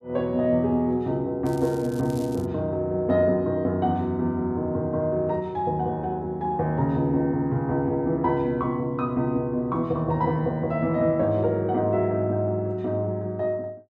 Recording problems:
crackle; at 1.5 s; loose cable, SNR 23 dB

